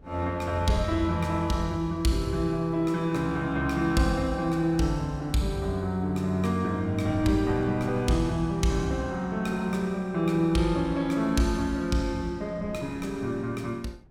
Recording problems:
wind on the microphone; below 230 Hz, SNR 19 dB

